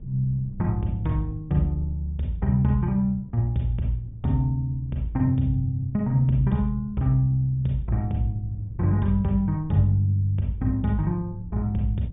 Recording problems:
low-pass filter; nothing above 3.7 kHz
wind on the microphone; below 130 Hz, SNR 18 dB

